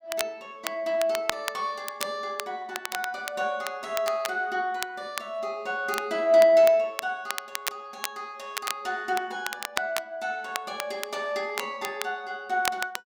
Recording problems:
crackling; vinyl, SNR 8 dB

